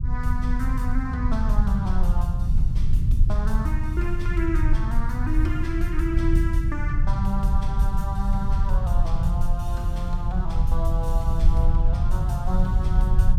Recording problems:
low-frequency rumble; below 70 Hz, SNR -6 dB

